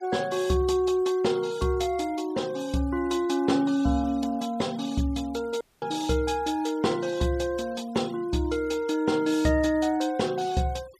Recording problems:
noise reduction artefacts; signal-to-artefact ratio 23 dB
dropout; at 5.5 s

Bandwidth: 15 kHz